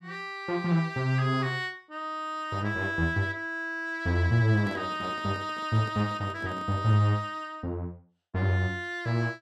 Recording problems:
handling noise; from 4.5 to 7 s; peak -10 dB vs average level

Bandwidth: 13 kHz